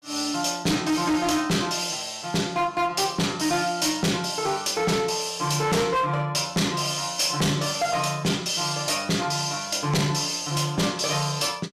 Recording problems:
distortion; hard clipping, signal-to-distortion ratio 7 dB

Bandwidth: 14 kHz